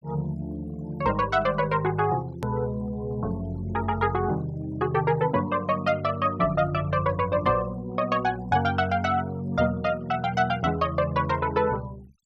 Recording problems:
denoising artefacts; signal-to-artefact ratio 24 dB
click at an edit; at 2.5 s

